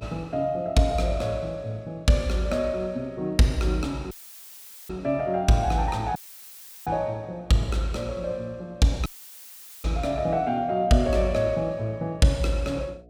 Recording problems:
hum; 60 Hz, harmonics up to 720 Hz, SNR 28 dB
dropout; at 4 s for 1 s, at 6 s for 0.5 s and at 9 s for 1 s; filled with static

